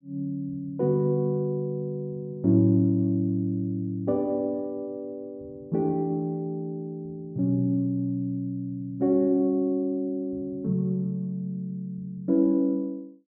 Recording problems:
none

